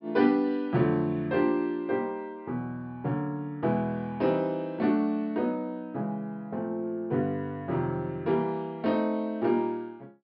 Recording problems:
low-pass filter; nothing above 5.4 kHz

